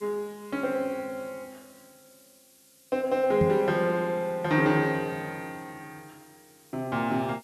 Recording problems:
hiss; slope +4 dB per octave, SNR 27 dB
microphone thump; at 3.5 s; peak +5 dB vs average level

